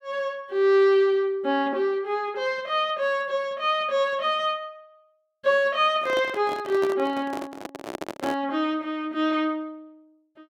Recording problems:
handling noise; from 6 to 8.5 s; peak -3 dB vs average level

